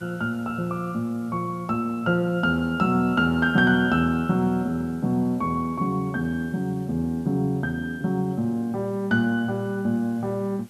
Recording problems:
background hiss; slope -2 dB per octave, SNR 29 dB

